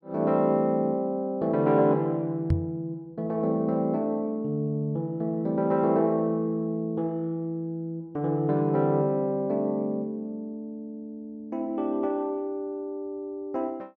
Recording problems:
microphone thump; at 2.5 s; peak +6 dB vs average level

